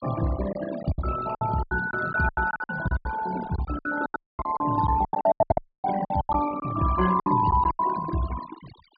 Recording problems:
low-pass filter; nothing above 4.8 kHz
noise reduction artefacts; signal-to-artefact ratio 11 dB
packet loss; 17% of the sound replaced, filled with silence
audio cutting out; at 4 s and at 5.5 s

